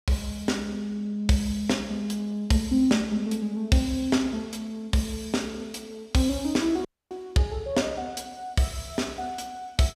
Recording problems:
dropout; at 7 s

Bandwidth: 15.5 kHz